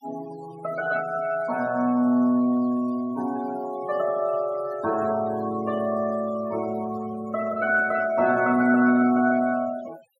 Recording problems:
noise reduction artefacts; signal-to-artefact ratio 19 dB

